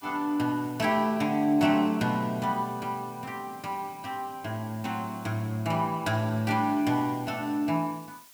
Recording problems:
hiss; slope +2 dB per octave, SNR 23 dB

